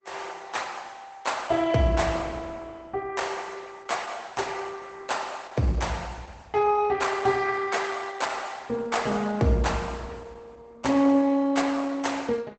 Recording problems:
lossy codec; Opus, log-spectral distance 4 dB, nothing above 8 kHz

